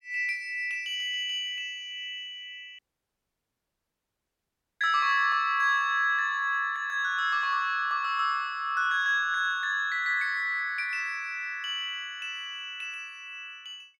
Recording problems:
dropout; at 3 s for 2 s

